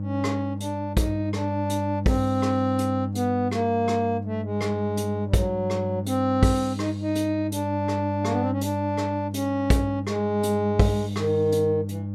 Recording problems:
hum; 50 Hz, harmonics up to 600 Hz, SNR 6 dB

